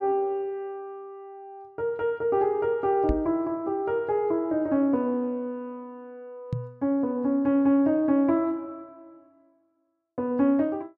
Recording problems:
microphone bump; at 3 s and at 6.5 s; peak +1 dB vs average level

